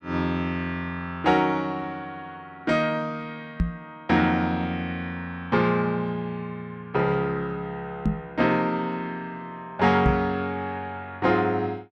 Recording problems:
microphone bump; at 3.5 s, at 8 s and at 10 s; peak +6 dB vs average level

